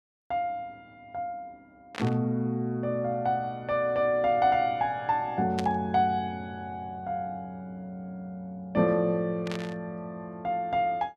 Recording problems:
static burst; at 2 s, at 5.5 s and at 9.5 s; peak -3 dB vs average level

